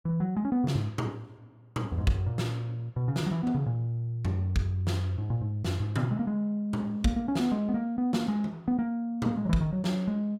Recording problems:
none

